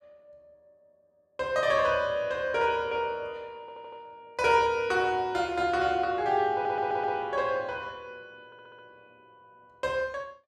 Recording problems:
audio stuttering; at 3.5 s, at 6.5 s and at 8.5 s

